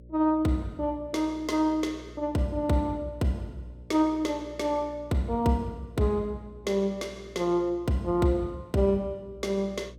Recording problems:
hum; 60 Hz, harmonics up to 600 Hz, SNR 20 dB

